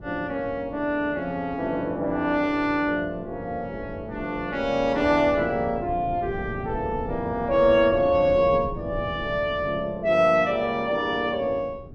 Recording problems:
wind noise; below 270 Hz, SNR 15 dB

